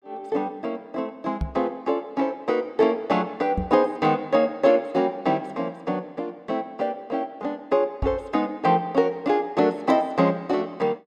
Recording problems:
knock on the microphone; at 1.5 s, at 3.5 s and at 8 s; peak +1 dB vs average level

